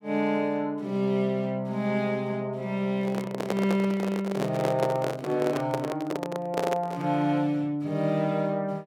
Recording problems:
microphone handling noise; from 3 to 7 s; peak +3 dB vs average level

